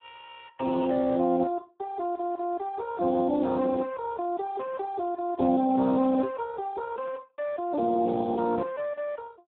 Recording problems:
phone line; 220 Hz to 2.8 kHz, Speex

